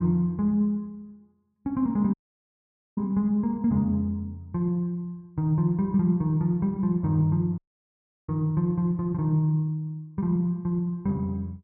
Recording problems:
audio cutting out; at 2 s for 1 s and at 7.5 s for 0.5 s

